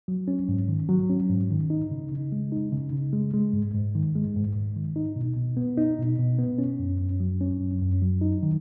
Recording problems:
none

